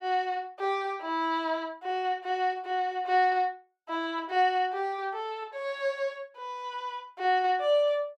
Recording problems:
none

